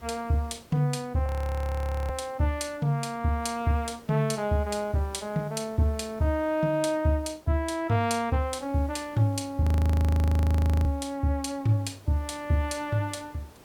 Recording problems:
hiss; slope -5 dB per octave, SNR 25 dB
audio freezing; at 1.5 s for 1 s and at 9.5 s for 1 s

